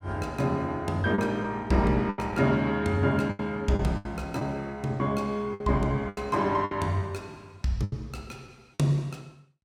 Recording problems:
packet loss; 7% of the sound replaced, filled with the last packet

